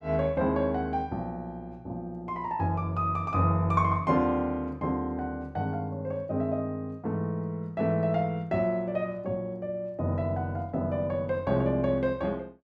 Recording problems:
none

